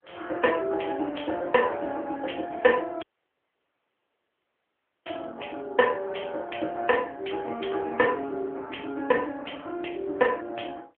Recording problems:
phone line; 240 Hz to 3.3 kHz, AMR-NB
dropout; at 3 s for 2 s

